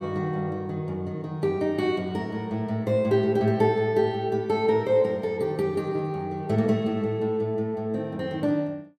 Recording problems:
none

